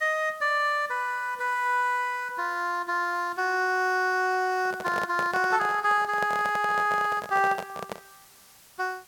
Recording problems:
background hiss; slope 0 dB per octave, SNR 27 dB
handling noise; from 4.5 to 8 s; peak -4 dB vs average level

